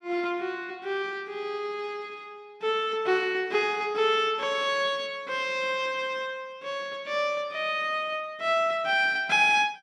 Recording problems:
none

